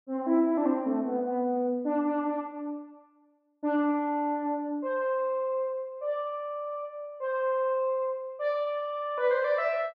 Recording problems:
none

